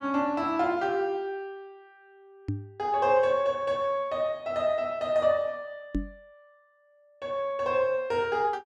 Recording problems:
microphone bump; at 2.5 s and at 6 s; peak +2 dB vs average level

